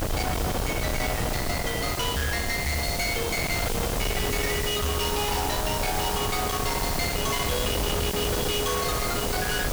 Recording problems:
distortion; soft clipping, signal-to-distortion ratio 7 dB
hiss; slope +3 dB per octave, SNR 6 dB
wind on the microphone; below 1.1 kHz, SNR 2 dB

